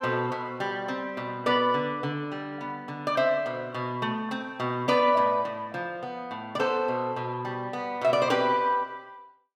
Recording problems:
none

